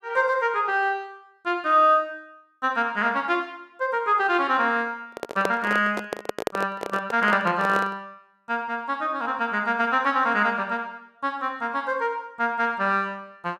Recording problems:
microphone handling noise; from 5 to 8 s; peak +2 dB vs average level

